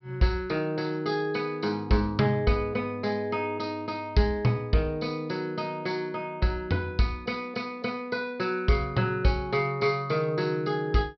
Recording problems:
low-pass filter; nothing above 5.5 kHz

